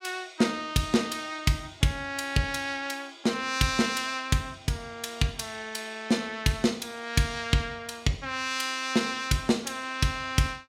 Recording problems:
none

